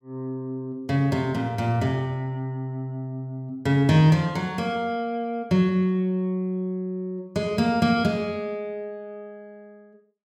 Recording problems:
none

